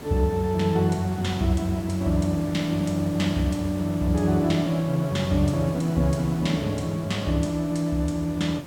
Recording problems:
background hiss; slope -6 dB per octave, SNR 14 dB

